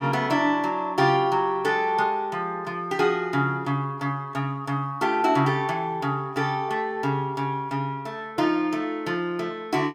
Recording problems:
none

